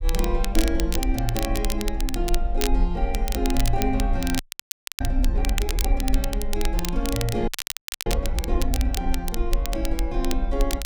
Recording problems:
low-frequency rumble; below 48 Hz, SNR -1 dB
crackling; vinyl, SNR 4 dB
audio freezing; at 4.5 s for 0.5 s and at 7.5 s for 0.5 s

